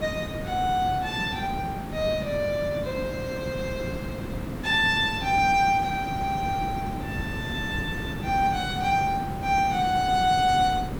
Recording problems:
hiss; slope -7 dB per octave, SNR 9 dB
wind noise; below 280 Hz, SNR 16 dB

